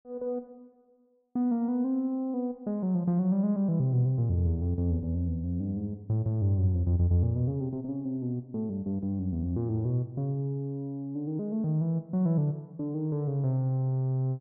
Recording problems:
none

